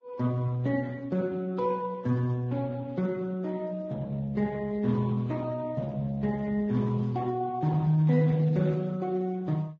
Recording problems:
lossy compression; Speex, then Vorbis, log-spectral distance 2 dB, nothing above 7.3 kHz

